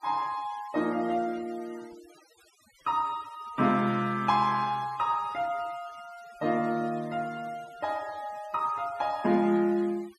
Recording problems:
noise reduction artefacts; signal-to-artefact ratio 23 dB

